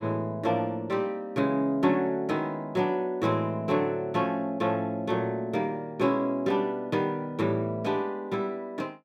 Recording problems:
none

